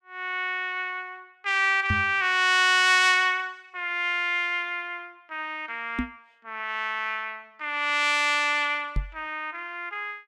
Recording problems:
microphone thump; at 2 s, at 6 s and at 9 s; peak 0 dB vs average level

